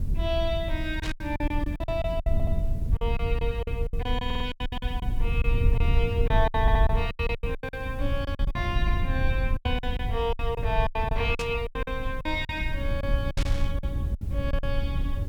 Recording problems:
hiss; slope -2 dB per octave, SNR 25 dB
low-frequency rumble; below 82 Hz, SNR -2 dB
packet loss; 15% of the sound replaced, filled with silence
static burst; at 1 s, at 11 s and at 13 s; peak 0 dB vs average level
audio stuttering; at 2.5 s, at 4.5 s and at 6.5 s

